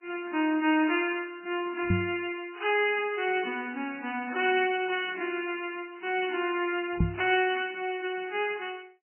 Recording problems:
codec artefacts; MP3, log-spectral distance 4 dB, nothing above 2.6 kHz
microphone bump; at 2 s and at 7 s; peak +7 dB vs average level

